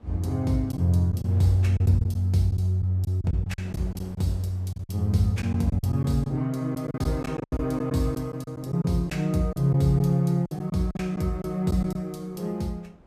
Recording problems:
wind on the microphone; below 480 Hz, SNR 26 dB
lost packets; 9% of the sound replaced, filled with silence

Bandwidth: 14.5 kHz